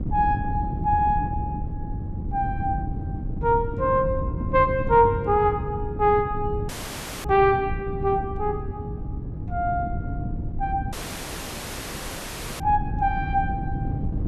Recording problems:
wind noise; below 170 Hz, SNR 6 dB
dropout; at 6.5 s for 0.5 s and at 11 s for 1.5 s

